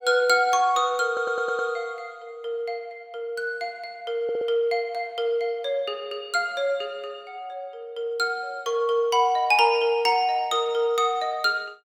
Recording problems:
stutter; at 1 s and at 4 s

